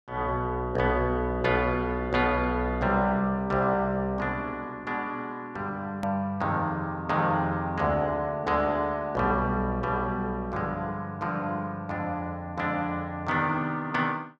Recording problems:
click at an edit; at 6 s

